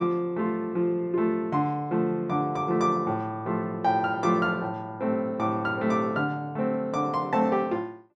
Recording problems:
none

